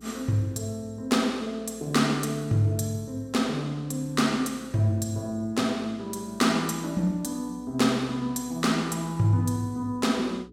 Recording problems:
hum; 60 Hz, harmonics up to 420 Hz, SNR 25 dB

